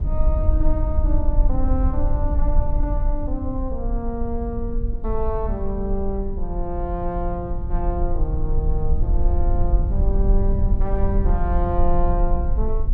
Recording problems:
rumble; below 56 Hz, strongest tone 22 Hz, SNR -4 dB

